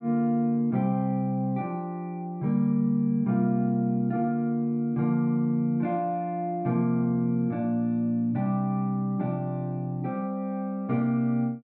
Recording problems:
none

